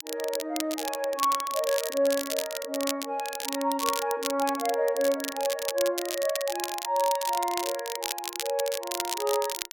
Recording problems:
crackle; vinyl, SNR 5 dB

